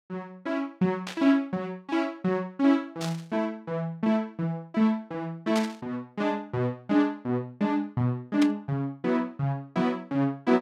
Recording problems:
static burst; 4 times, first at 1 s; peak -2 dB vs average level

